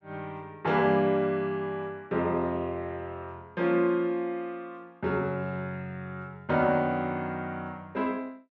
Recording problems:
none

